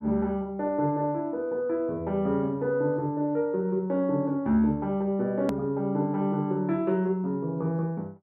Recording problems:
hard cut with a click; at 5.5 s

